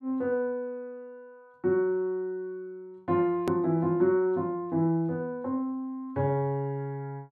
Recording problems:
edit click; at 3.5 s

